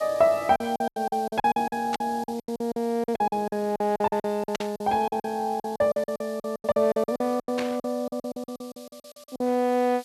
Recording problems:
background hiss; SNR 22 dB
lost packets; 22% of the sound replaced, filled with silence
burst of static; at 2 s, at 4.5 s and at 7.5 s; peak -2 dB vs average level

